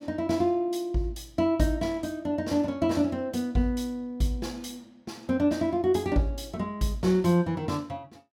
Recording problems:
none

